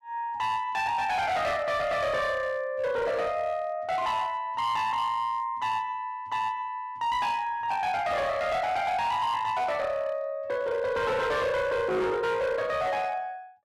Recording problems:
distortion; hard clipping, signal-to-distortion ratio 10 dB

